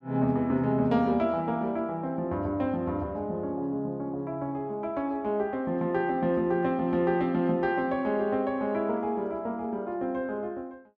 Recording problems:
none

